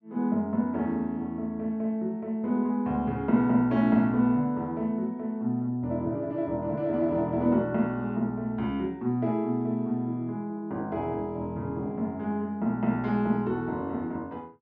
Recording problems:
treble cut off; nothing above 7.3 kHz

